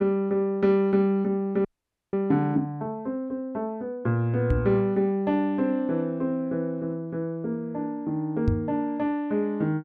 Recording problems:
frozen audio; at 1.5 s
knock on the microphone; at 4.5 s and at 8.5 s; peak +6 dB vs average level

